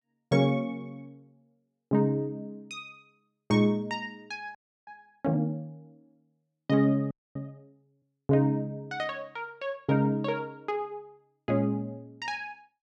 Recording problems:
audio freezing; at 4.5 s and at 7 s

